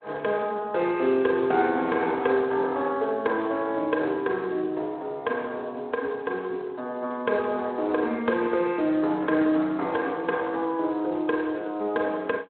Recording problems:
telephone audio; 240 Hz to 3.9 kHz, Speex

